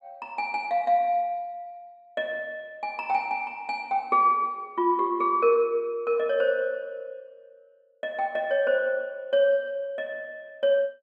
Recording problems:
none

